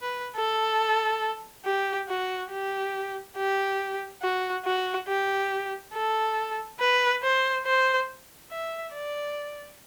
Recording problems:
background hiss; slope -2 dB per octave, SNR 23 dB

